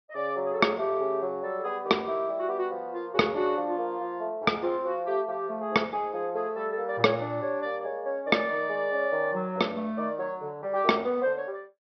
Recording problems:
treble missing; nothing above 5.5 kHz

